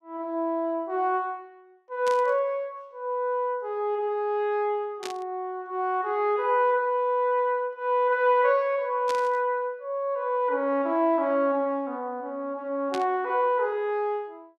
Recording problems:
burst of static; 4 times, first at 2 s; peak -5 dB vs average level

